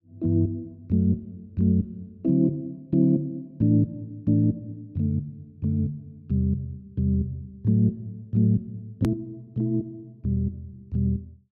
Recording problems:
hard cut with a click; at 9 s

